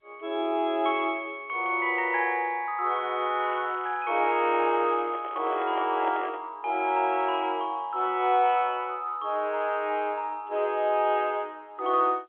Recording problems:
phone line; 280 Hz to 3.4 kHz, G.711
crackling; from 3.5 to 5.5 s; loose cable, SNR 27 dB
handling noise; from 5 to 6.5 s; peak -6 dB vs average level

